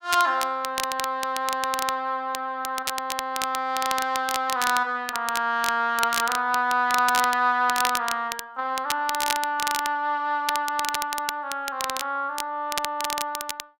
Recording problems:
crackle; vinyl, SNR 7 dB

